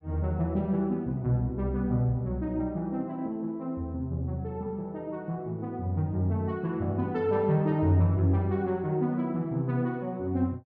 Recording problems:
none

